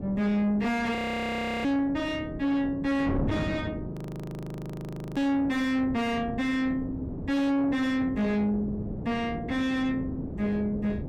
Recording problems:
distorted audio; soft clipping, signal-to-distortion ratio 5 dB
wind on the microphone; below 340 Hz, SNR 8 dB
audio freezing; at 1 s for 0.5 s and at 4 s for 1 s

